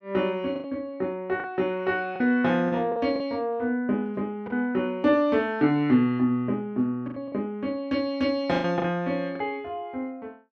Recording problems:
lost packets; 6% of the sound replaced, filled with the last packet

